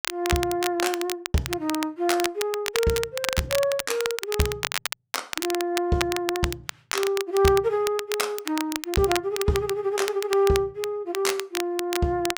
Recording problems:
crackle; vinyl, SNR 6 dB

